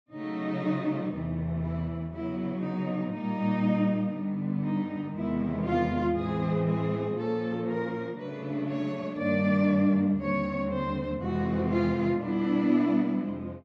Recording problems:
none

